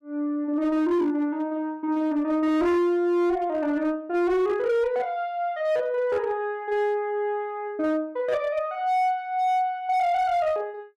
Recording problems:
distorted audio; hard clipping, signal-to-distortion ratio 10 dB

